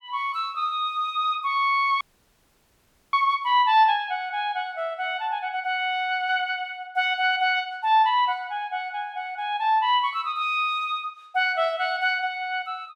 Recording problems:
audio cutting out; at 2 s for 1 s

